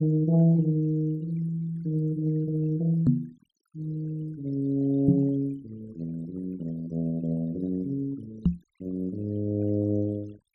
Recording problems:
denoising artefacts; signal-to-artefact ratio 25 dB
microphone bump; at 3 s, at 5 s and at 8.5 s; peak +9 dB vs average level

